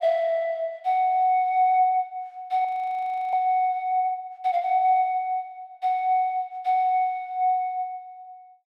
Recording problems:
frozen audio; at 2.5 s for 0.5 s

